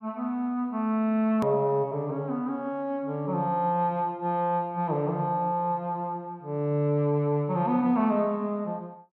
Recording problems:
click at an edit; at 1.5 s

